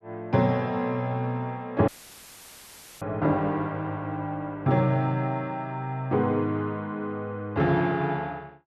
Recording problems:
dropout; at 2 s for 1 s; filled with static

